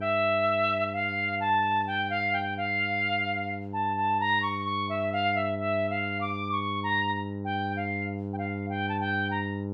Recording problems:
hum; 50 Hz, harmonics up to 1 kHz, SNR 8 dB

